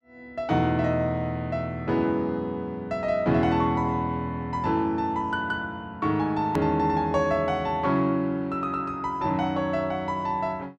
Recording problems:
edit click; at 6.5 s

